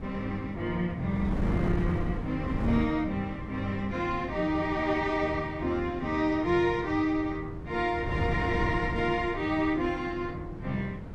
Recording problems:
wind on the microphone; below 250 Hz, SNR 7 dB

